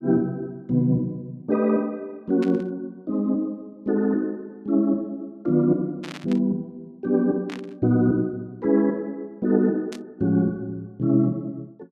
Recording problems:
static burst; 4 times, first at 2.5 s; peak -9 dB vs average level

